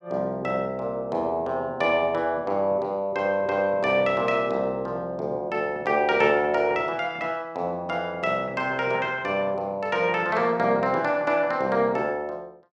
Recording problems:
none

